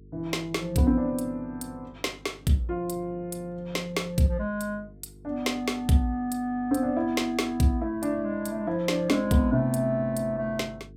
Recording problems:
electrical hum; 50 Hz, harmonics up to 450 Hz, SNR 23 dB

